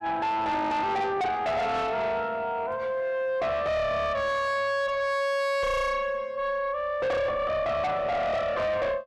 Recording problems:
distorted audio; soft clipping, signal-to-distortion ratio 6 dB

